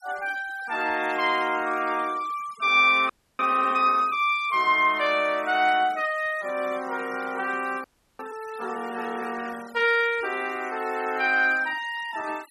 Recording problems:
denoising artefacts; signal-to-artefact ratio 21 dB
audio freezing; at 3 s and at 8 s

